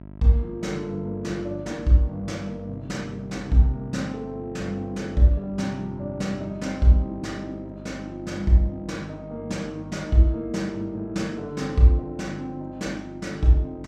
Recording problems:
hum; 50 Hz, harmonics up to 1.3 kHz, SNR 16 dB

